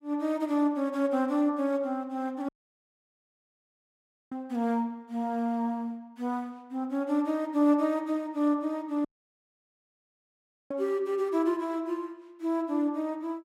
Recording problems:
dropout; at 2.5 s for 2 s and at 9 s for 1.5 s

